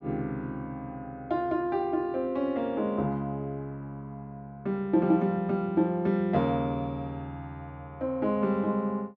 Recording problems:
low-pass filter; nothing above 7 kHz

